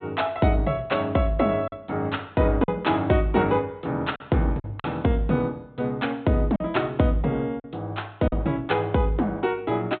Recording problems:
low-pass filter; nothing above 4 kHz
packet loss; 3% of the sound replaced, filled with silence

